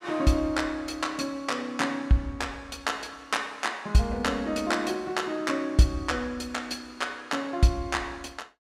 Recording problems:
none

